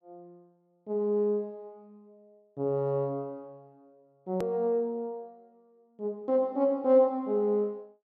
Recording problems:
hard cut with a click; at 4.5 s

